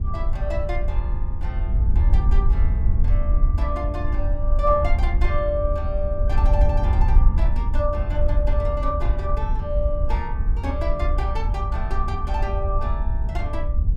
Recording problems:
wind on the microphone; below 64 Hz, SNR -5 dB

